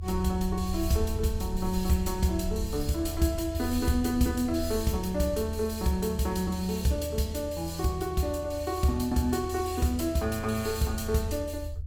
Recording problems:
low-frequency rumble; below 80 Hz, strongest tone 78 Hz, SNR 8 dB

